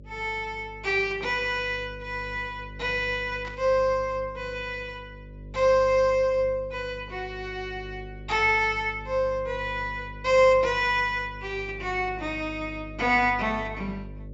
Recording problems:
treble cut off; nothing above 8 kHz
hum; 50 Hz, harmonics up to 600 Hz, SNR 17 dB
static burst; at 3.5 s; peak -13 dB vs average level

